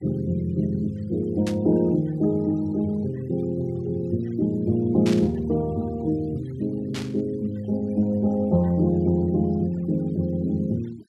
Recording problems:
noise reduction artefacts; signal-to-artefact ratio 27 dB
burst of static; at 1.5 s, at 5 s and at 7 s; peak -6 dB vs average level

